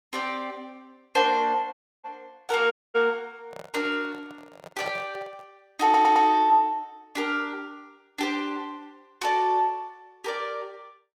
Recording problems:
audio cutting out; at 1.5 s and at 2.5 s
handling noise; from 3.5 to 5.5 s; peak -7 dB vs average level
stutter; at 6 s

